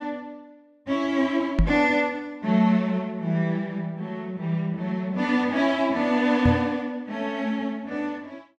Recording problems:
microphone thump; at 1.5 s and at 6.5 s; peak +7 dB vs average level

